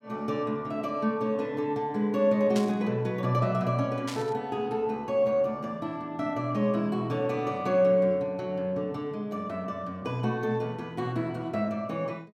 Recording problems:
static burst; at 2.5 s and at 4 s; peak -4 dB vs average level

